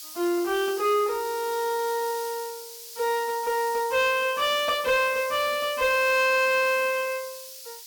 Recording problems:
distortion; soft clipping, signal-to-distortion ratio 12 dB
background hiss; SNR 14 dB

